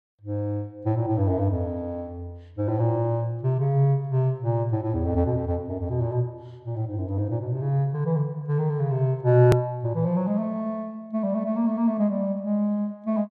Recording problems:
click at an edit; at 9.5 s

